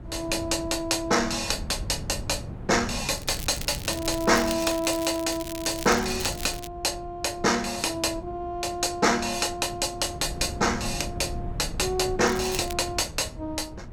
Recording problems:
wind on the microphone; below 180 Hz, SNR 13 dB
crackling; from 3 to 6.5 s and at 12 s; loose cable, SNR 12 dB

